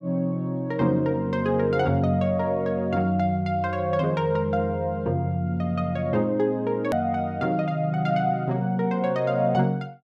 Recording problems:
hard cut with a click; at 7 s

